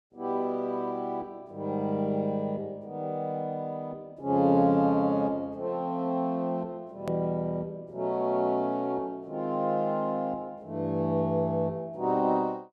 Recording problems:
edit click; at 7 s

